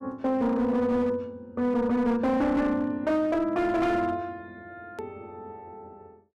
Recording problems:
distortion; hard clipping, signal-to-distortion ratio 11 dB
edit click; at 5 s

